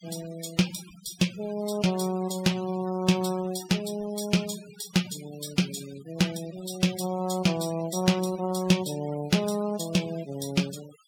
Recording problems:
denoising artefacts; signal-to-artefact ratio 17 dB

